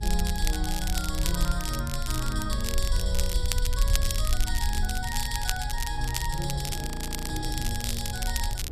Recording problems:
electrical hum; 50 Hz, harmonics up to 450 Hz, SNR 18 dB
rumble; below 60 Hz, SNR -1 dB
wind on the microphone; below 330 Hz, SNR 11 dB
crackle; vinyl, SNR 2 dB
frozen audio; at 7 s

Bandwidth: 14 kHz